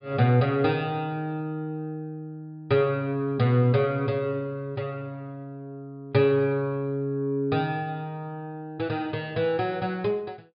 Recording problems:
treble cut off; nothing above 5 kHz

